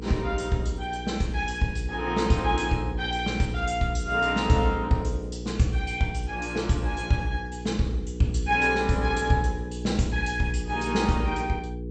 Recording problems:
codec artefacts; MP2, log-spectral distance 3 dB, nothing above 8.2 kHz
hum; 60 Hz, harmonics up to 480 Hz, SNR 9 dB

